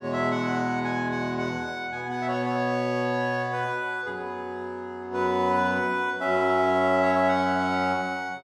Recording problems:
none

